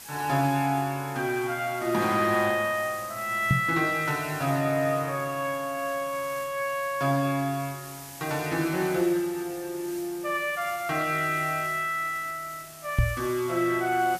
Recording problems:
hiss; slope 0 dB per octave, SNR 15 dB
microphone thump; at 3.5 s and at 13 s; peak +7 dB vs average level

